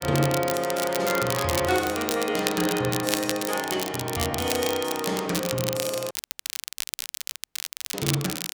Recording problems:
crackle; vinyl, SNR 5 dB
dropout; at 6 s for 2 s

